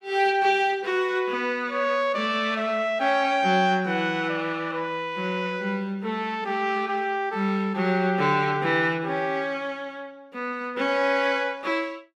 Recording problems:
none

